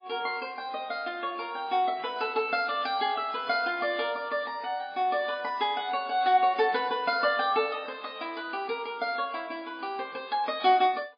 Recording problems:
lossy compression; MP3, log-spectral distance 3 dB, nothing above 4.2 kHz

